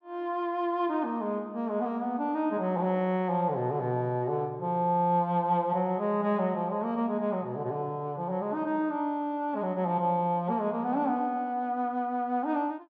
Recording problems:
none

